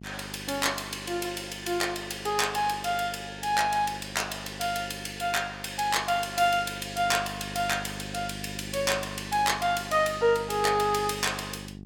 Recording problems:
hum; 50 Hz, harmonics up to 500 Hz, SNR 15 dB

